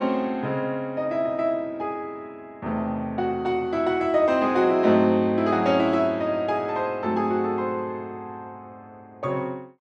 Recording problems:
none

